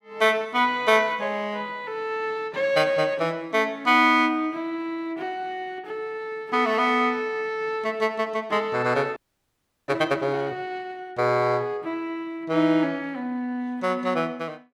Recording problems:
frozen audio; at 9 s for 0.5 s

